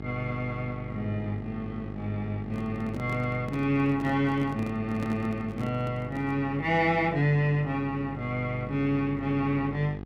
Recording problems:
hum; 50 Hz, harmonics up to 1.3 kHz, SNR 11 dB
microphone handling noise; from 2.5 to 6.5 s; peak -4 dB vs average level

